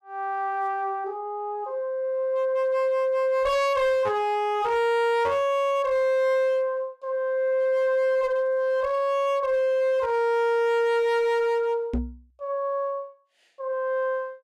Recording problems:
distorted audio; hard clipping, signal-to-distortion ratio 11 dB
microphone thump; at 12 s; peak 0 dB vs average level

